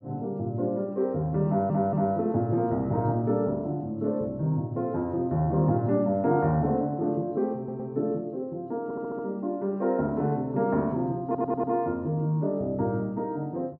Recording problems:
stutter; 4 times, first at 1.5 s

